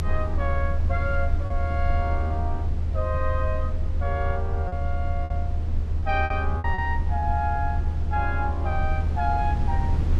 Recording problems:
low-frequency rumble; below 80 Hz, strongest tone 20 Hz, SNR -3 dB
packet loss; 4% of the sound replaced, filled with repeated pitch periods

